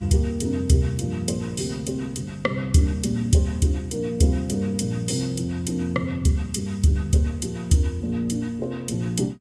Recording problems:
codec artefacts; Vorbis, log-spectral distance 2 dB, nothing above 12.3 kHz

